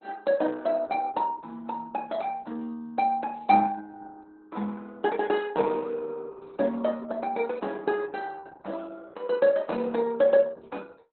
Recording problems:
lossy compression; Opus, log-spectral distance 3 dB, nothing above 4.1 kHz

